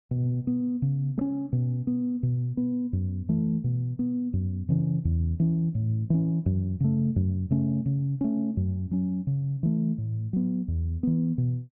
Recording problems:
none

